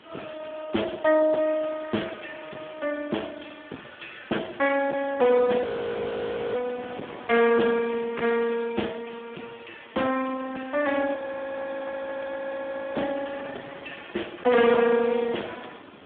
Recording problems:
telephone audio; 190 Hz to 3.4 kHz, Speex
distorted audio; hard clipping, signal-to-distortion ratio 11 dB
hiss; SNR 28 dB
wind noise; below 1.4 kHz, SNR 20 dB
audio freezing; at 5.5 s for 1 s and at 11 s for 2 s

